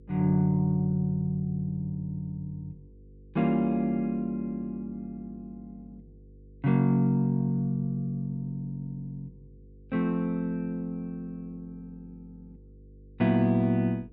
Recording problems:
hum; 50 Hz, harmonics up to 500 Hz, SNR 25 dB

